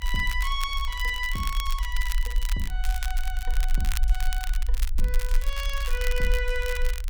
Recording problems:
rumble; below 44 Hz, SNR -2 dB
crackle; vinyl, SNR 7 dB

